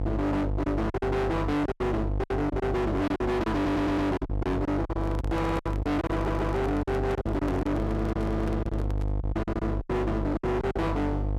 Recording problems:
distorted audio; hard clipping, uneven, signal-to-distortion ratio 5 dB
electrical hum; 50 Hz, harmonics up to 650 Hz, SNR 2 dB
packet loss; 12% of the sound replaced, filled with silence
stutter; at 3.5 s and at 6 s
handling noise; from 5 to 9 s; peak -6 dB vs average level

